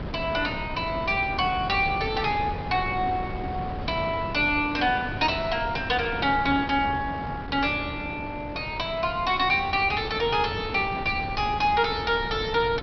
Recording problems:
low-pass filter; nothing above 5.5 kHz
wind on the microphone; below 530 Hz, SNR 10 dB

